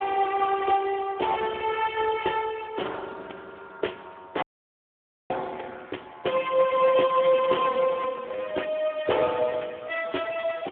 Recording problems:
telephone audio; 320 Hz to 2.6 kHz, Speex
frozen audio; at 4.5 s for 1 s

